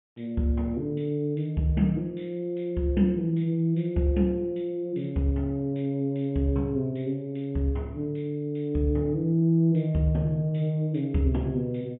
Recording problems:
treble cut off; nothing above 3.4 kHz

